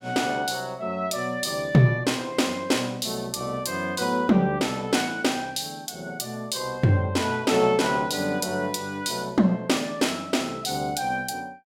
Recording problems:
none

